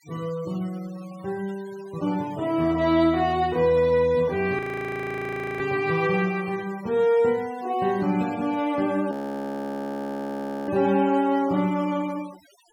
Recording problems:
noise reduction artefacts; signal-to-artefact ratio 22 dB
audio freezing; at 4.5 s for 1 s and at 9 s for 1.5 s

